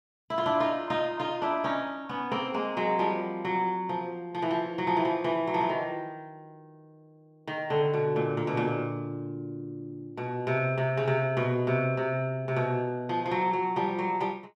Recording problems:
none

